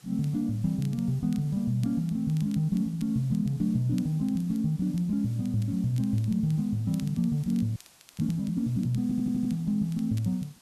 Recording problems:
background hiss; slope 0 dB per octave, SNR 27 dB
crackling; vinyl, SNR 27 dB
frozen audio; at 8 s
audio stuttering; at 9 s

